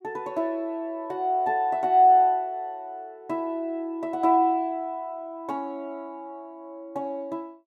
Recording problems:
none

